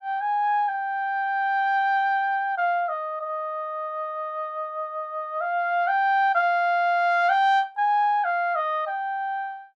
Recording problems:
none

